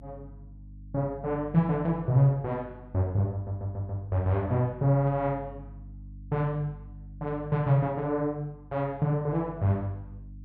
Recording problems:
hum; 50 Hz, harmonics up to 300 Hz, SNR 19 dB
audio stuttering; at 3.5 s

